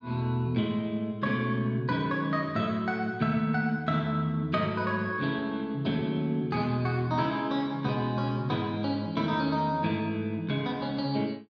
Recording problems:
none

